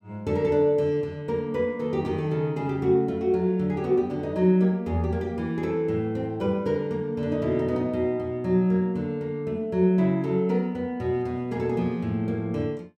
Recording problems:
none

